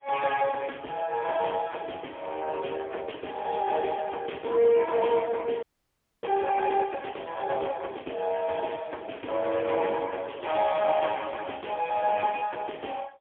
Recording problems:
telephone audio; 280 Hz to 3.3 kHz, AMR-NB, then MP3
audio freezing; at 5.5 s for 0.5 s

